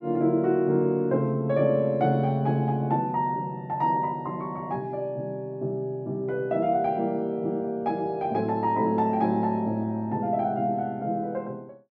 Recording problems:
none

